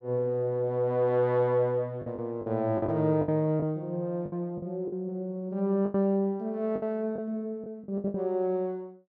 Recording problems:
packet loss; 8% of the sound replaced, filled with the last packet

